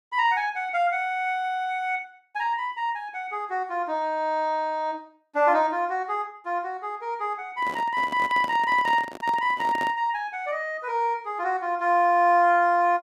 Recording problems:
microphone handling noise; from 7.5 to 10 s; peak -6 dB vs average level

